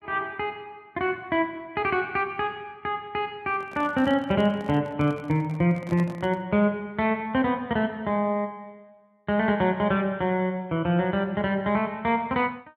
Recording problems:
microphone handling noise; from 3.5 to 6.5 s; peak -8 dB vs average level

